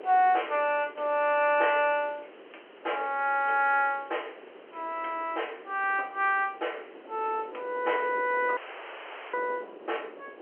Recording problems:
phone line; 370 Hz to 3.2 kHz, G.711
hiss; SNR 27 dB
wind noise; below 630 Hz, SNR 20 dB
audio cutting out; at 8.5 s for 1 s

